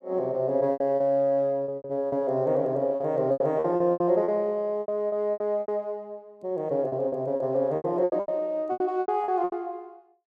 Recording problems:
lost packets; 16% of the sound replaced, filled with repeated pitch periods

